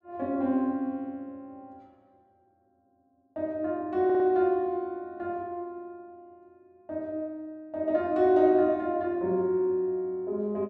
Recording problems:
audio stuttering; at 4 s

